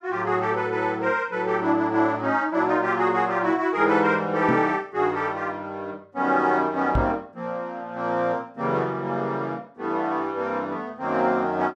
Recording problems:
microphone bump; at 4.5 s and at 7 s; peak +3 dB vs average level

